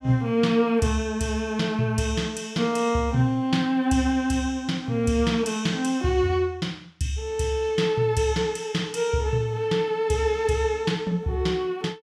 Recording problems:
none

